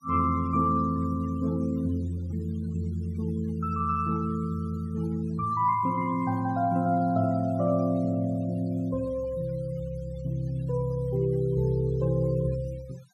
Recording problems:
noise reduction artefacts; signal-to-artefact ratio 23 dB

